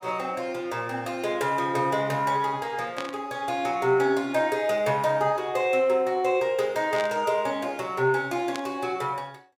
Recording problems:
static burst; at 3 s, at 7 s and at 8.5 s; peak -5 dB vs average level

